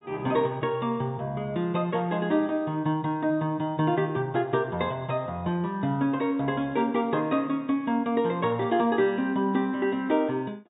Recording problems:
treble missing; nothing above 4 kHz

